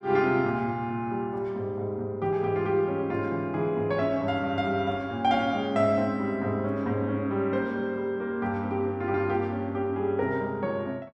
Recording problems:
none

